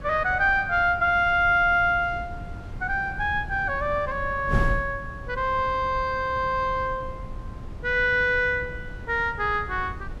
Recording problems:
wind noise; below 140 Hz, SNR 13 dB

